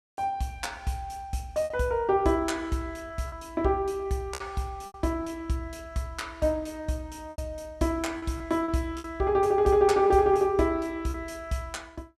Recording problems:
lost packets; 5% of the sound replaced, filled with repeated pitch periods

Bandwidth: 14.5 kHz